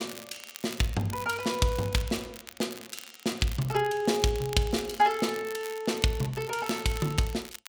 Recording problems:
crackle; vinyl, SNR 15 dB

